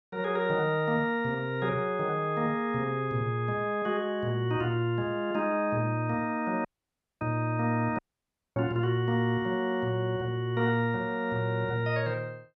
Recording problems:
dropout; at 6.5 s for 0.5 s and at 8 s for 0.5 s

